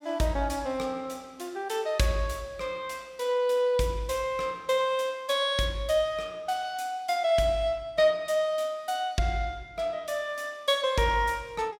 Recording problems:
none

